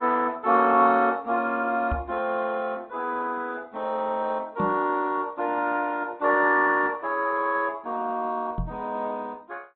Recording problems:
low-pass filter; nothing above 3.8 kHz
codec artefacts; Opus, log-spectral distance 3 dB
knock on the microphone; at 2 s, at 4.5 s and at 8.5 s; peak -1 dB vs average level

